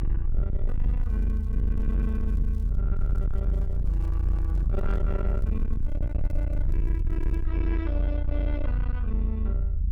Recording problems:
distortion; soft clipping, signal-to-distortion ratio 8 dB
low-frequency rumble; below 74 Hz, strongest tone 46 Hz, SNR -8 dB
crackle; from 0.5 to 3 s and from 3 to 7.5 s; loose cable, SNR 27 dB
handling noise; from 3.5 to 5 s; peak -7 dB vs average level

